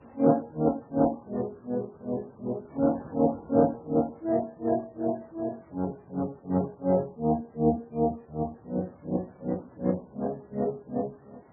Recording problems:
lossy codec; Speex, then MP3, log-spectral distance 5 dB
wind noise; below 810 Hz, SNR 23 dB

